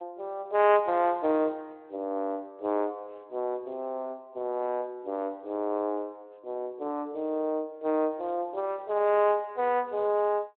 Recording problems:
phone line; 260 Hz to 3.3 kHz, Speex

